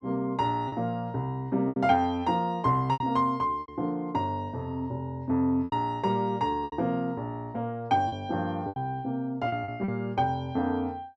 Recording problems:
packet loss; 6% of the sound replaced, filled with repeated pitch periods

